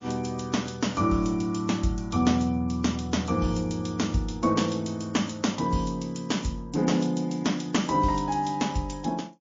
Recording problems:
lossy codec; MP3, log-spectral distance 5 dB

